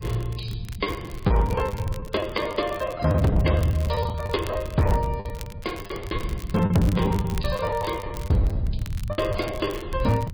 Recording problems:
lossy codec; MP3, log-spectral distance 3 dB
distortion; hard clipping, signal-to-distortion ratio 12 dB
low-frequency rumble; below 110 Hz, SNR 10 dB
crackle; vinyl, SNR 20 dB
packet loss; 16% of the sound replaced, filled with the last packet

